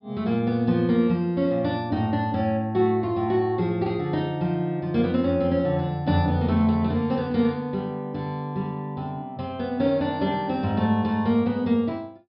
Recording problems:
treble missing; nothing above 5.5 kHz

